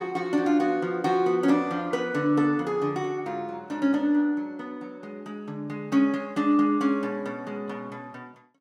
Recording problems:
none

